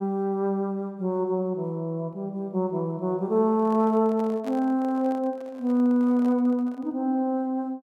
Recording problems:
microphone handling noise; from 3.5 to 7 s; peak -9 dB vs average level

